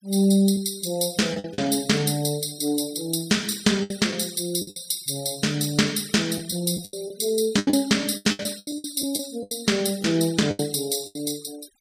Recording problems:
denoising artefacts; signal-to-artefact ratio 20 dB
packet loss; 10% of the sound replaced, filled with the last packet

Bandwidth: 15 kHz